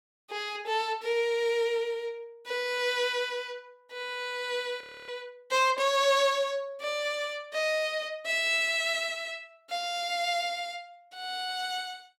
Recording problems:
audio freezing; at 5 s

